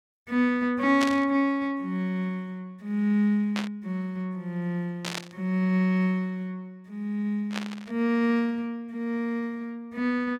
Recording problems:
burst of static; 4 times, first at 1 s; peak +1 dB vs average level

